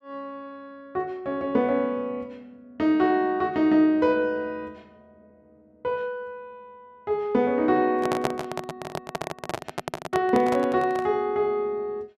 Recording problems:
microphone handling noise; from 8 to 11 s; peak +2 dB vs average level

